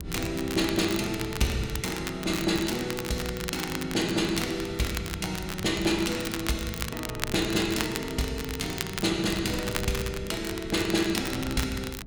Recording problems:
wind on the microphone; below 190 Hz, SNR 13 dB
crackling; vinyl, SNR 8 dB

